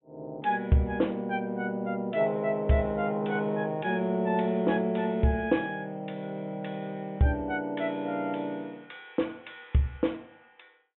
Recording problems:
treble missing; nothing above 3.5 kHz

